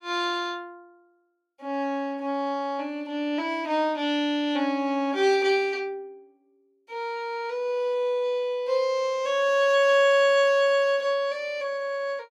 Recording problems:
none

